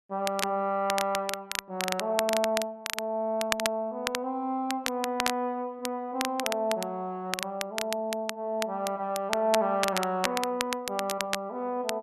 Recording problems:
crackle; vinyl, SNR 4 dB

